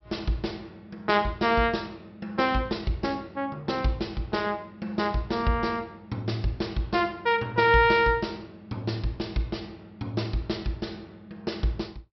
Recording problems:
treble cut off; nothing above 5.6 kHz

